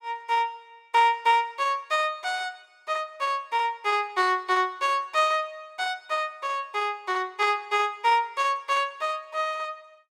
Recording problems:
none

